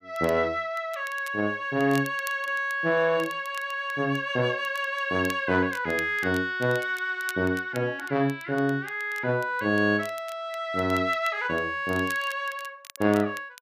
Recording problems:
crackle; vinyl, SNR 20 dB

